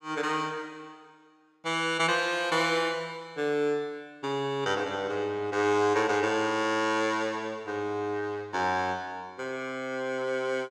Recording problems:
none

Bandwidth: 14.5 kHz